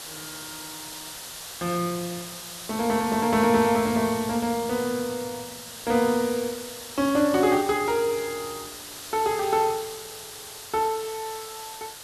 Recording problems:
background hiss; SNR 11 dB

